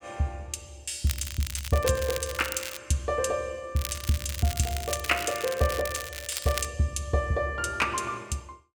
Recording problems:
crackling; from 1 to 3 s and from 4 to 6.5 s; loose cable, SNR 7 dB

